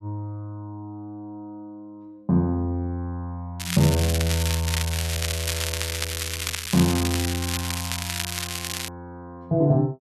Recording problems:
crackle; from 3.5 to 9 s; loose cable, SNR 2 dB

